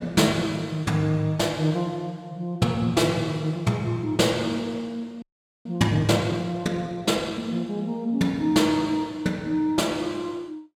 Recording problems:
audio freezing; at 5 s

